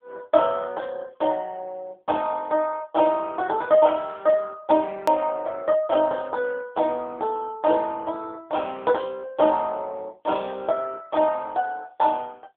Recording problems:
telephone audio; 240 Hz to 2 kHz, AMR-NB
click at an edit; at 5 s

